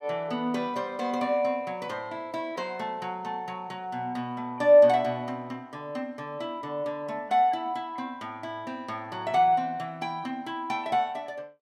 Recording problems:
none

